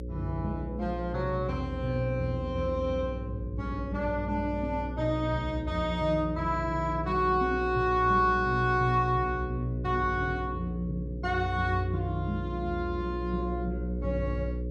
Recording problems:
hum; 60 Hz, harmonics up to 540 Hz, SNR 7 dB

